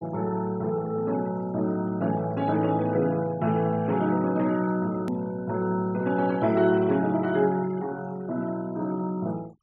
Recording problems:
noise reduction artefacts; signal-to-artefact ratio 22 dB
hard cut with a click; at 5 s

